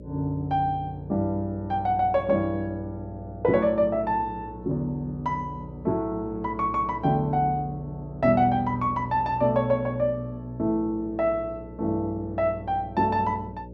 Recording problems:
hum; 60 Hz, harmonics up to 600 Hz, SNR 16 dB

